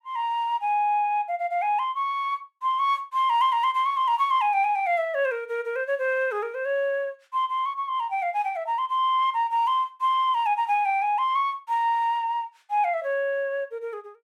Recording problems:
none

